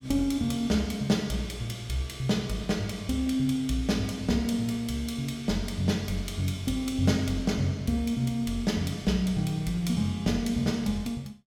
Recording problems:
none

